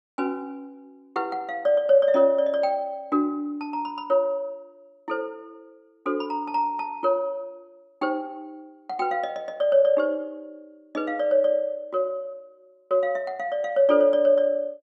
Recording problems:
none

